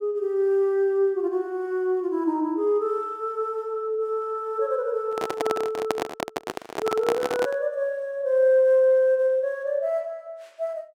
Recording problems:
microphone handling noise; from 5 to 7.5 s; peak +2 dB vs average level

